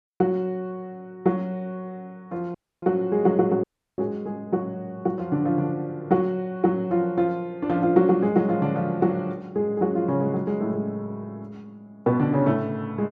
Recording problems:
audio cutting out; at 2.5 s and at 3.5 s

